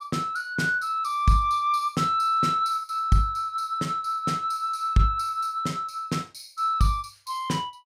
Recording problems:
none

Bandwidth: 16 kHz